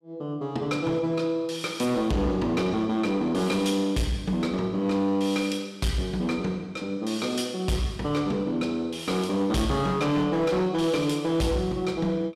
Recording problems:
distortion; hard clipping, signal-to-distortion ratio 11 dB

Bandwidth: 14.5 kHz